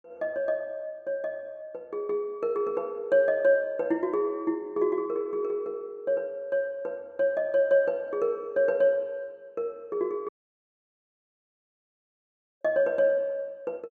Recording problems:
audio cutting out; at 10 s for 2.5 s

